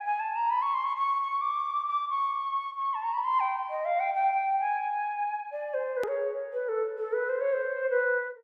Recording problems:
edit click; at 6 s

